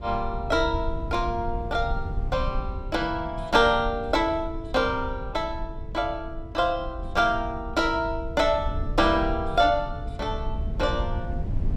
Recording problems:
rumble; below 88 Hz, SNR 9 dB

